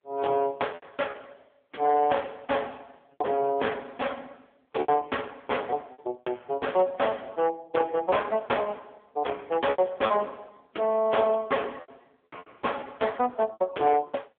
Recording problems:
phone line; 320 Hz to 3.4 kHz, AMR-NB
distortion; hard clipping, signal-to-distortion ratio 7 dB
packet loss; 7% of the sound replaced, filled with repeated pitch periods

